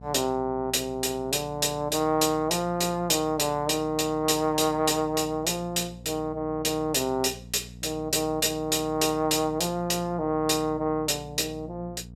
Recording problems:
hum; 60 Hz, harmonics up to 480 Hz, SNR 19 dB

